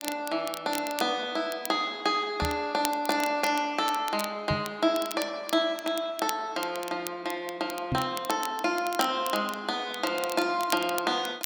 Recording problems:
crackling; vinyl, SNR 11 dB
knock on the microphone; at 2.5 s, at 4.5 s and at 8 s; peak +2 dB vs average level

